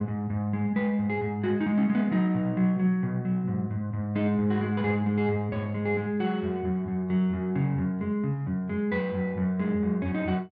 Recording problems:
none

